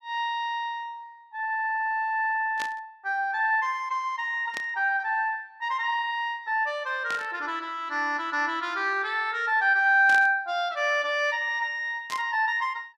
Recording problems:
static burst; 5 times, first at 2.5 s; peak -6 dB vs average level

